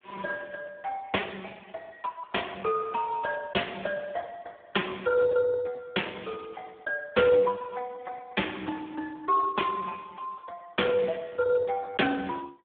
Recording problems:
telephone audio; 240 Hz to 3.5 kHz, Speex

